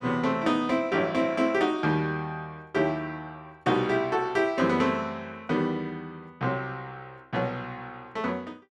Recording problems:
none

